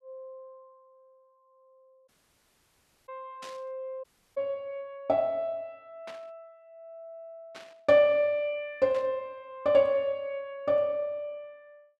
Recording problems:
dropout; at 2 s for 1 s and at 4 s
static burst; 4 times, first at 3.5 s; peak -13 dB vs average level

